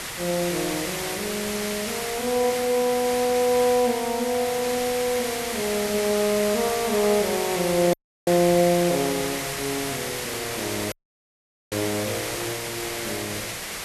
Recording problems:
background hiss; SNR 4 dB
dropout; at 8 s and at 11 s for 1 s

